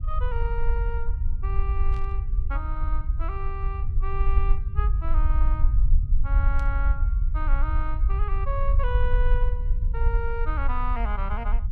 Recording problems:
low-frequency rumble; below 54 Hz, strongest tone 22 Hz, SNR -8 dB
burst of static; at 2 s and at 6.5 s; peak -11 dB vs average level

